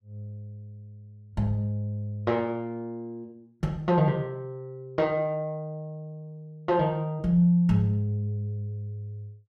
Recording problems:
none

